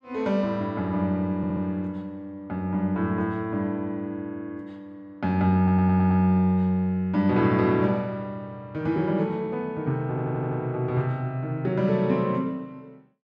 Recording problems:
audio stuttering; at 1.5 s, at 5.5 s and at 10 s

